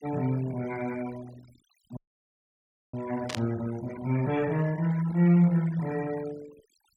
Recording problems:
noise reduction artefacts; signal-to-artefact ratio 21 dB
audio freezing; at 2 s for 1 s
static burst; at 3.5 s; peak -1 dB vs average level

